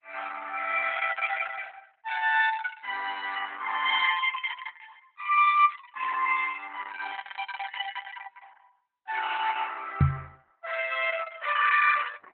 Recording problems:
lossy codec; Opus, log-spectral distance 5 dB, nothing above 3.6 kHz
knock on the microphone; at 10 s; peak +10 dB vs average level

